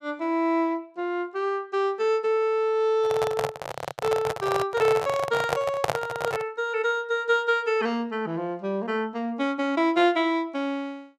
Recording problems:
microphone handling noise; from 3 to 6.5 s; peak +4 dB vs average level

